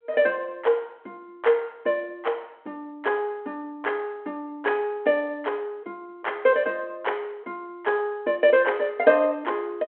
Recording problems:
telephone audio; 260 Hz to 3.3 kHz, G.726

